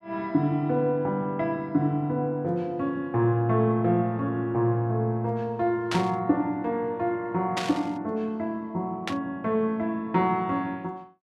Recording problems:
static burst; at 6 s, at 7.5 s and at 9 s; peak +1 dB vs average level

